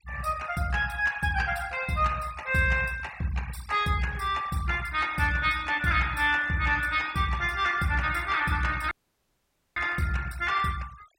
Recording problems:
denoising artefacts; signal-to-artefact ratio 20 dB
audio cutting out; at 9 s for 1 s

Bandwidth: 16 kHz